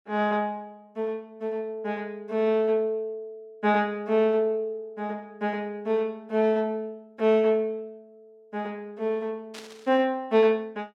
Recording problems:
static burst; at 9.5 s; peak -11 dB vs average level

